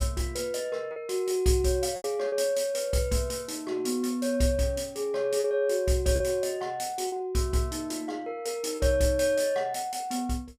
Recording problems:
lost packets; 3% of the sound replaced, filled with repeated pitch periods

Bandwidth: 15.5 kHz